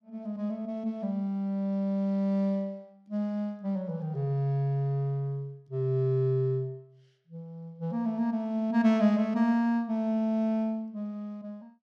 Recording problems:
none

